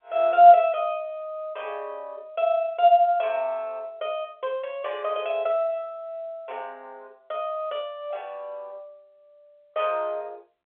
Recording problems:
telephone audio; 280 Hz to 3.5 kHz, G.711

